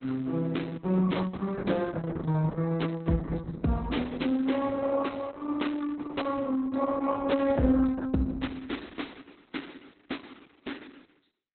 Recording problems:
lossy compression; Opus, log-spectral distance 4 dB, nothing above 4 kHz

